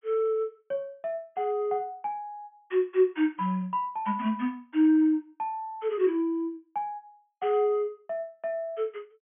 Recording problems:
treble missing; nothing above 3.4 kHz

